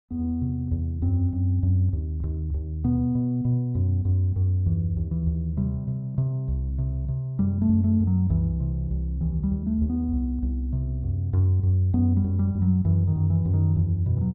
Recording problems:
none

